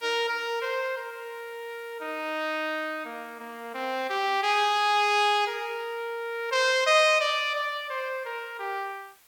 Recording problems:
hiss; slope 0 dB per octave, SNR 28 dB

